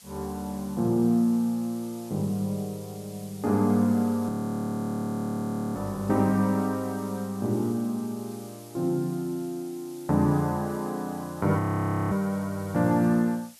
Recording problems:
background hiss; slope +3 dB per octave, SNR 21 dB
audio freezing; at 4.5 s for 1.5 s and at 12 s for 0.5 s

